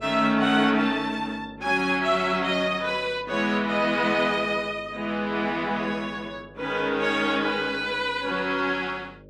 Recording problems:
hum; 50 Hz, harmonics up to 600 Hz, SNR 24 dB

